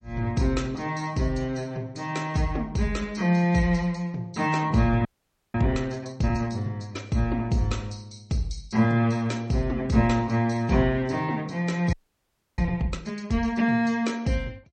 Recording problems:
lossy codec; MP3, log-spectral distance 3 dB, nothing above 8.2 kHz
frozen audio; at 5 s and at 12 s for 0.5 s

